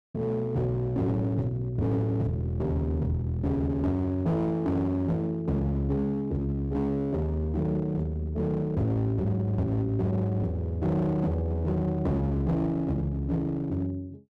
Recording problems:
distortion; hard clipping, uneven, signal-to-distortion ratio 9 dB

